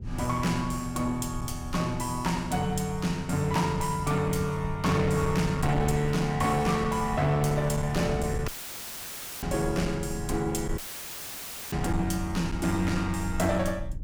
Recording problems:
distortion; hard clipping, uneven, signal-to-distortion ratio 10 dB
rumble; below 110 Hz, SNR 10 dB
audio cutting out; at 8.5 s for 1 s and at 11 s for 1 s

